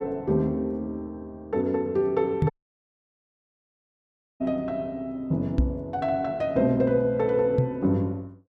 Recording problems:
microphone thump; at 2.5 s, at 5.5 s and at 7.5 s; peak +7 dB vs average level
dropout; at 2.5 s for 2 s

